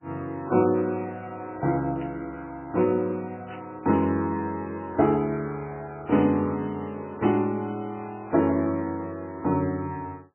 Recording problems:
lossy compression; MP3, log-spectral distance 2 dB, nothing above 2.5 kHz
burst of static; 4 times, first at 2 s; peak -14 dB vs average level

